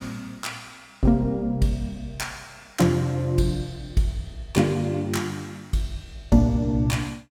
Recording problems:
none

